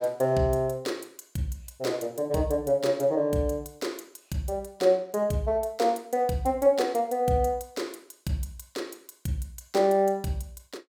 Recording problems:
none

